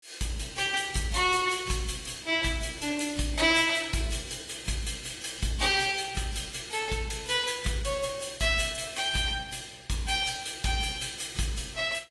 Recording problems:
lossy codec; AAC, log-spectral distance 7 dB, nothing above 11 kHz

